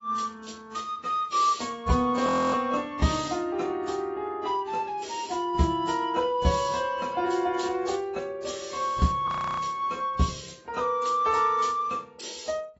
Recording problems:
lossy codec; AAC, then AAC, log-spectral distance 4 dB, nothing above 7.6 kHz
frozen audio; at 2.5 s and at 9.5 s

